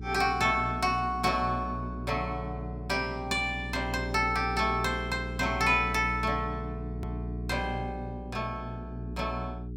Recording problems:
hum; 60 Hz, harmonics up to 420 Hz, SNR 8 dB
click at an edit; at 7 s

